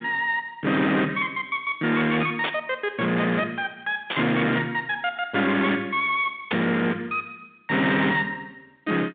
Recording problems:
telephone audio; 170 Hz to 3.7 kHz, G.726
distortion; hard clipping, uneven, signal-to-distortion ratio 7 dB
burst of static; at 2.5 s, at 4 s and at 6.5 s; peak +1 dB vs average level

